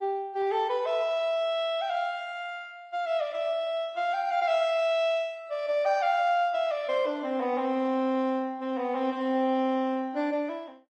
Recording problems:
lossy codec; AAC, then Opus, log-spectral distance 2 dB, nothing above 12 kHz

